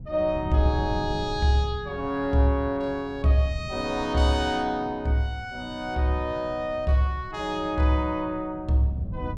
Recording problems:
wind on the microphone; below 150 Hz, SNR 13 dB

